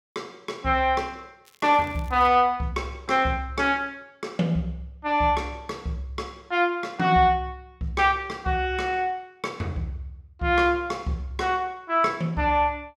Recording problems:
crackle; at 1.5 s; loose cable, SNR 30 dB

